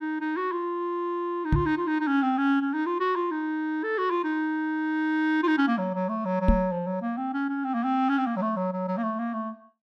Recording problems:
microphone thump; at 1.5 s and at 6.5 s; peak +8 dB vs average level

